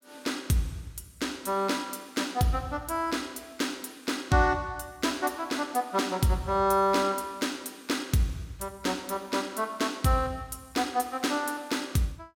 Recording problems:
none

